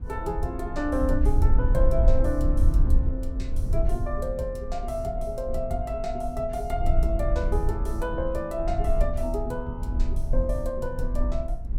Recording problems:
low-frequency rumble; below 56 Hz, SNR -2 dB

